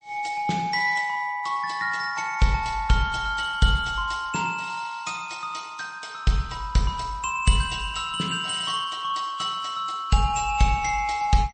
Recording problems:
codec artefacts; MP3, log-spectral distance 3 dB, nothing above 8 kHz

